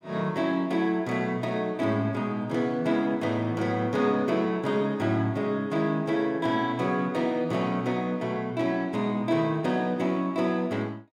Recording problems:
none

